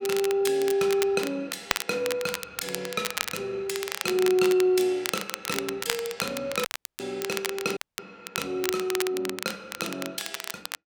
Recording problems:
crackle; vinyl, SNR 6 dB
audio cutting out; at 6.5 s and at 8 s

